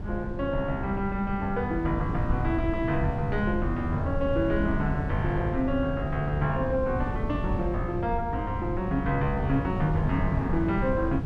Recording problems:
wind noise; below 150 Hz, SNR 4 dB

